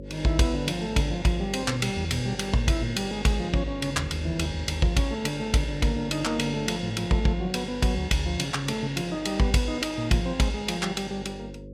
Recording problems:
electrical hum; 50 Hz, harmonics up to 550 Hz, SNR 14 dB

